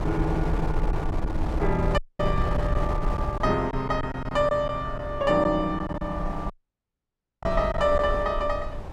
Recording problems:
wind on the microphone; below 110 Hz, SNR 5 dB
packet loss; 5% of the sound replaced, filled with silence
audio cutting out; at 2 s and at 6.5 s for 1 s

